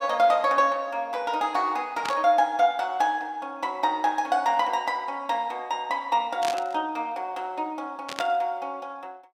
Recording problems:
static burst; at 2 s, at 6.5 s and at 8 s; peak -3 dB vs average level

